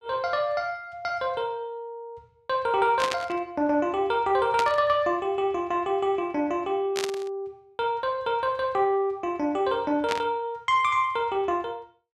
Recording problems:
static burst; 4 times, first at 3 s; peak 0 dB vs average level

